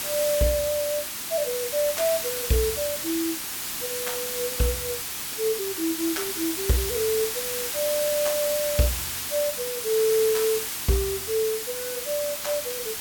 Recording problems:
hiss; SNR 1 dB

